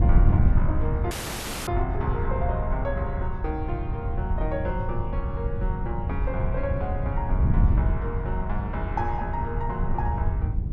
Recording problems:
wind on the microphone; below 100 Hz, SNR -5 dB
dropout; at 1 s for 0.5 s

